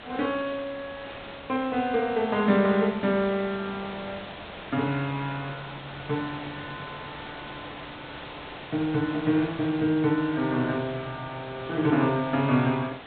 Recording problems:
low-pass filter; nothing above 4 kHz
background hiss; SNR 13 dB

